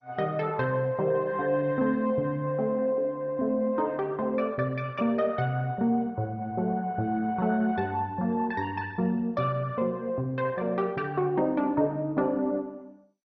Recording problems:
lossy compression; MP2, log-spectral distance 2 dB, nothing above 5.3 kHz

